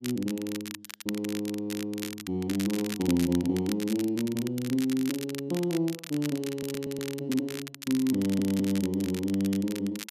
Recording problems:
crackling; vinyl, SNR 11 dB
audio stuttering; at 6.5 s and at 8 s

